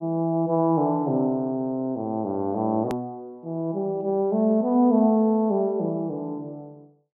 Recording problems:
hard cut with a click; at 3 s

